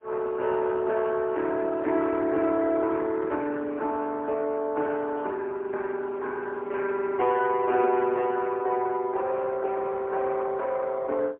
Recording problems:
phone line; 260 Hz to 2.6 kHz, AMR-NB, then MP3

